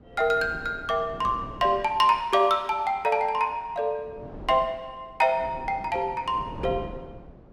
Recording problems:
wind noise; below 420 Hz, SNR 17 dB

